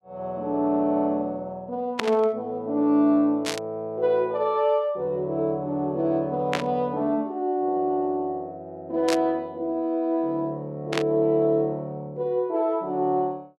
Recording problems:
static burst; 5 times, first at 2 s; peak +2 dB vs average level

